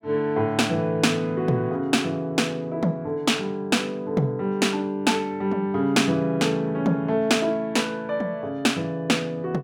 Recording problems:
none

